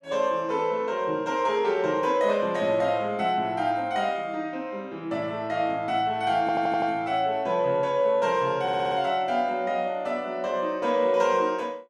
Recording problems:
audio stuttering; at 6.5 s and at 8.5 s

